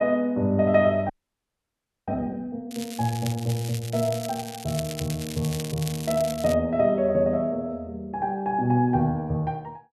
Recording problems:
frozen audio; at 1 s for 1 s
crackle; from 2.5 to 6.5 s; loose cable, SNR 12 dB

